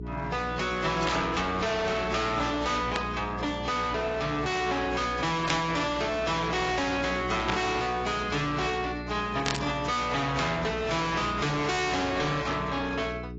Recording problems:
lossy codec; AAC, then AAC, log-spectral distance 4 dB, nothing above 7.3 kHz
distorted audio; hard clipping, signal-to-distortion ratio 6 dB
mains hum; 60 Hz, harmonics up to 660 Hz, SNR 11 dB
burst of static; 5 times, first at 1 s; peak +1 dB vs average level

